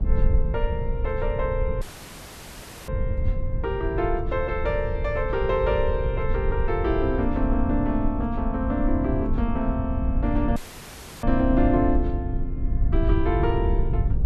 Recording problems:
rumble; below 84 Hz, SNR 1 dB
dropout; at 2 s for 1 s and at 11 s for 0.5 s; filled with static

